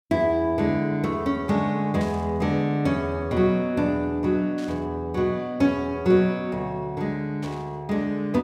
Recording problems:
static burst; at 2 s, at 4.5 s and at 7.5 s; peak -14 dB vs average level

